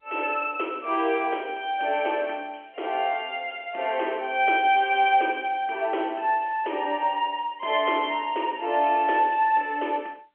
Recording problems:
telephone audio; 300 Hz to 3.2 kHz, G.711

